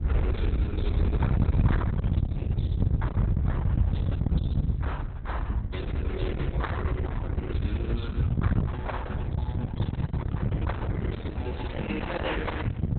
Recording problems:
lossy codec; MP2, then Opus, log-spectral distance 2 dB, nothing above 4 kHz
distorted audio; hard clipping, signal-to-distortion ratio 6 dB
low-frequency rumble; below 140 Hz, SNR -6 dB

